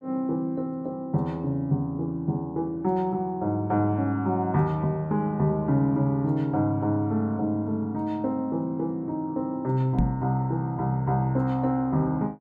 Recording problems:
microphone bump; at 10 s; peak +5 dB vs average level

